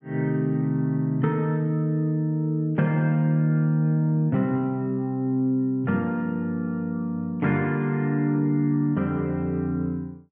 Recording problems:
none

